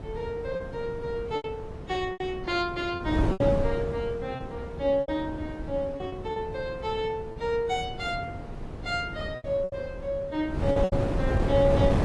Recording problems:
lossy compression; AAC, log-spectral distance 2 dB, nothing above 10.4 kHz
wind on the microphone; below 360 Hz, SNR 4 dB
lost packets; 8% of the sound replaced, filled with repeated pitch periods

